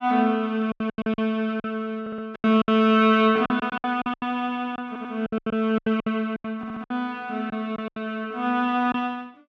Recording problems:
packet loss; 15% of the sound replaced, filled with silence
audio stuttering; at 2 s, at 5 s and at 6.5 s

